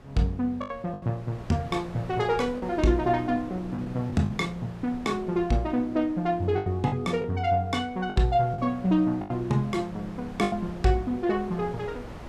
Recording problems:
wind noise; below 730 Hz, SNR 17 dB
lost packets; 6% of the sound replaced, filled with the last packet

